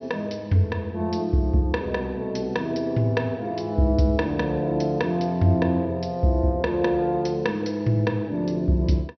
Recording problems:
low-pass filter; nothing above 5.9 kHz

